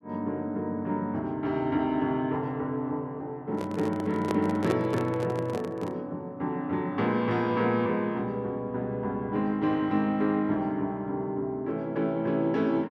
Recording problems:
microphone handling noise; from 3.5 to 6 s; peak +2 dB vs average level

